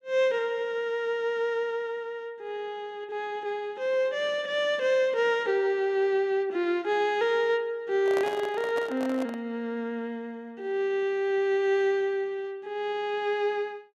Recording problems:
microphone handling noise; from 8 to 9.5 s; peak -2 dB vs average level

